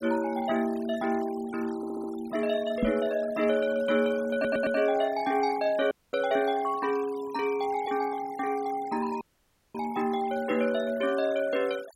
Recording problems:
denoising artefacts; signal-to-artefact ratio 19 dB
audio stuttering; at 2 s and at 4.5 s
microphone thump; at 3 s; peak +5 dB vs average level
audio cutting out; at 6 s and at 9 s for 0.5 s

